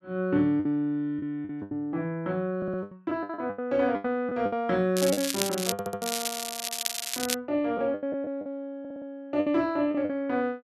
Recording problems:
lost packets; 11% of the sound replaced, filled with the last packet
stutter; at 2.5 s, at 5.5 s and at 9 s
crackling; from 5 to 7.5 s; loose cable, SNR 2 dB

